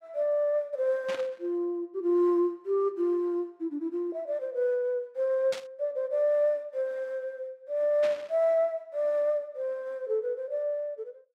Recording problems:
static burst; at 1 s, at 5.5 s and at 8 s; peak -6 dB vs average level

